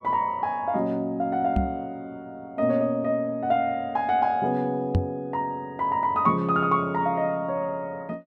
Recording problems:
microphone bump; at 1.5 s and at 5 s; peak +6 dB vs average level

